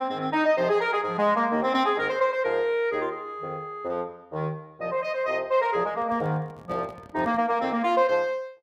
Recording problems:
handling noise; from 6 to 7.5 s; peak -11 dB vs average level

